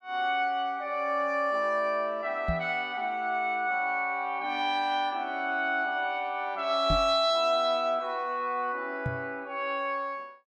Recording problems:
microphone bump; at 2.5 s, at 7 s and at 9 s; peak +1 dB vs average level

